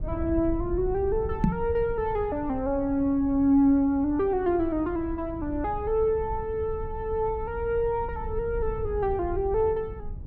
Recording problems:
rumble; below 90 Hz, SNR 12 dB
microphone thump; at 1.5 s; peak +7 dB vs average level

